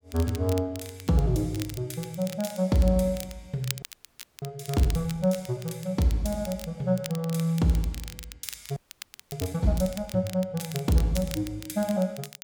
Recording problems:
crackle; vinyl, SNR 14 dB
audio freezing; at 4 s for 0.5 s and at 9 s for 0.5 s

